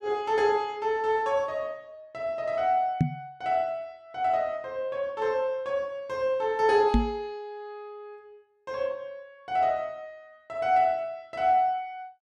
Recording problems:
microphone bump; at 3 s and at 7 s; peak +8 dB vs average level

